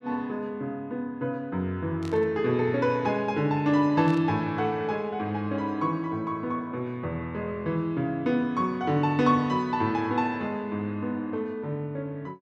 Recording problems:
burst of static; at 2 s and at 4 s; peak -13 dB vs average level

